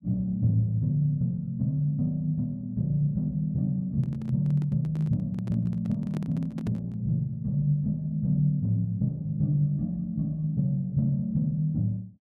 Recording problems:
handling noise; from 4 to 7 s; peak -8 dB vs average level

